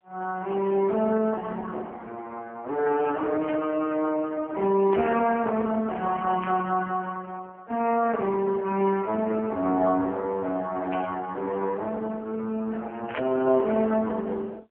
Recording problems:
phone line; 240 Hz to 2.5 kHz, AMR-NB
burst of static; 5 times, first at 3.5 s; peak -1 dB vs average level

